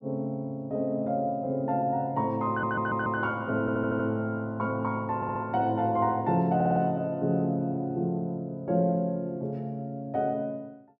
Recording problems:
audio stuttering; 4 times, first at 2.5 s

